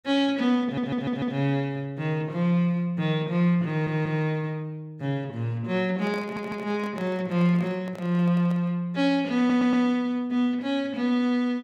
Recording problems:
audio stuttering; 4 times, first at 0.5 s
handling noise; from 6 to 8.5 s; peak -9 dB vs average level

